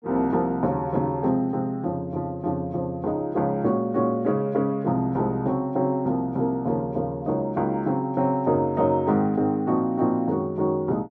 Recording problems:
none

